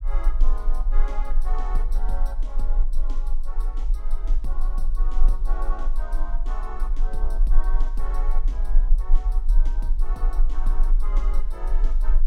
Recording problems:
rumble; below 32 Hz, strongest tone 22 Hz, SNR -14 dB

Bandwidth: 16.5 kHz